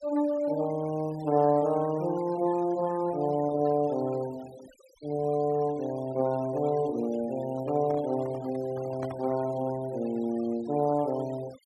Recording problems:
denoising artefacts; signal-to-artefact ratio 22 dB
microphone handling noise; from 7.5 to 9.5 s; peak -6 dB vs average level

